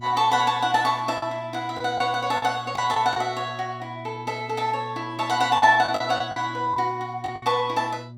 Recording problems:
hum; 60 Hz, harmonics up to 600 Hz, SNR 18 dB
lost packets; 5% of the sound replaced, filled with the last packet

